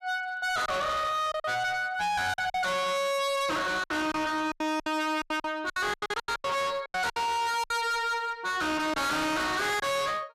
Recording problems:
distorted audio; hard clipping, uneven, signal-to-distortion ratio 6 dB
packet loss; 11% of the sound replaced, filled with silence

